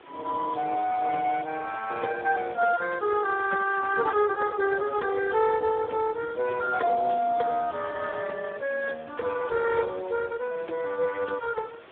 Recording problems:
telephone audio; 320 Hz to 2.3 kHz, Speex
background hiss; SNR 23 dB

